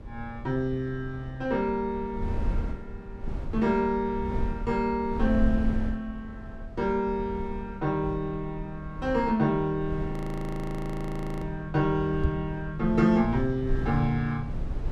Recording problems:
rumble; below 88 Hz, SNR 9 dB
frozen audio; at 10 s for 1.5 s
microphone bump; at 12 s; peak +5 dB vs average level

